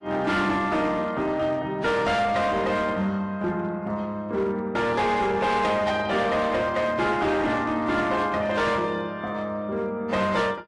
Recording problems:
lossy codec; AAC, log-spectral distance 2 dB, nothing above 10.4 kHz
distorted audio; hard clipping, signal-to-distortion ratio 11 dB

